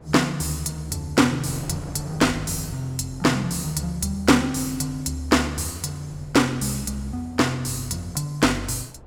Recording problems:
wind noise; below 550 Hz, SNR 21 dB

